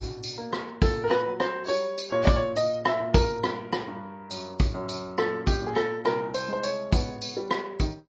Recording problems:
lossy codec; AAC, log-spectral distance 3 dB, nothing above 6.9 kHz

